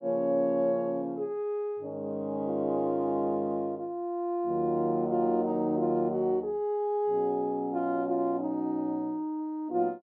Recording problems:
none

